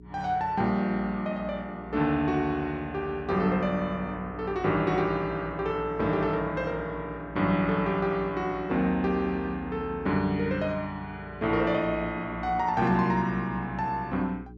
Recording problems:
mains hum; 60 Hz, harmonics up to 420 Hz, SNR 17 dB

